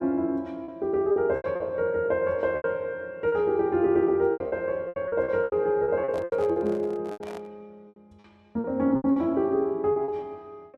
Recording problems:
lost packets; 12% of the sound replaced, filled with repeated pitch periods
handling noise; from 6 to 7.5 s; peak -10 dB vs average level

